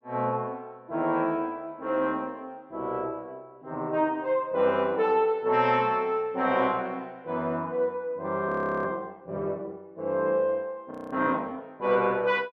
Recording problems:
frozen audio; at 8.5 s and at 11 s

